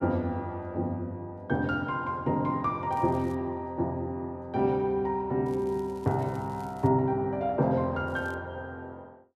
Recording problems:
crackle; at 3 s, from 5.5 to 7 s and at 8 s; loose cable, SNR 29 dB

